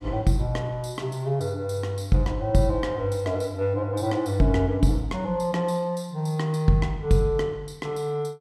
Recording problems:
none

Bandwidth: 14.5 kHz